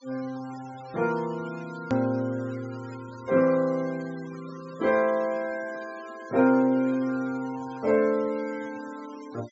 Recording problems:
treble missing; nothing above 7.6 kHz
denoising artefacts; signal-to-artefact ratio 22 dB
click at an edit; at 2 s

